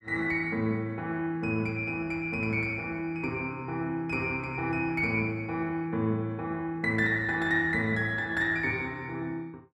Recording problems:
none

